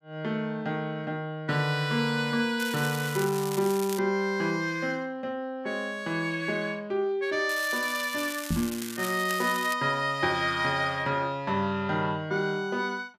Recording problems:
crackling; from 2.5 to 4 s and from 7.5 to 9.5 s; loose cable, SNR 10 dB
microphone thump; at 8.5 s; peak +3 dB vs average level

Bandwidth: 14.5 kHz